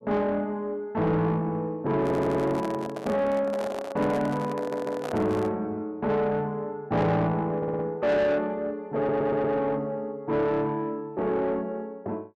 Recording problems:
distorted audio; soft clipping, signal-to-distortion ratio 10 dB
microphone handling noise; from 2 to 5.5 s; peak -4 dB vs average level
audio stuttering; 4 times, first at 2 s

